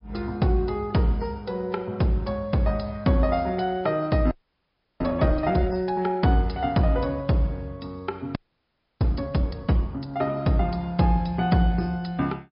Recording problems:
low-pass filter; nothing above 5.2 kHz
codec artefacts; MP3, log-spectral distance 2 dB
frozen audio; at 4.5 s for 0.5 s and at 8.5 s for 0.5 s

